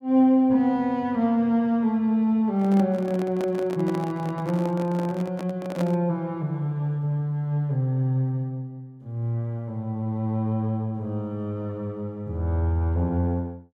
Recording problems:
handling noise; from 2.5 to 6 s; peak -4 dB vs average level

